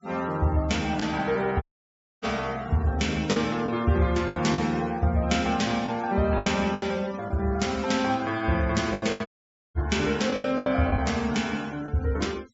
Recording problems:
treble missing; nothing above 8 kHz
noise reduction artefacts; signal-to-artefact ratio 20 dB
packet loss; 6% of the sound replaced, filled with the last packet
dropout; at 1.5 s for 0.5 s and at 9.5 s

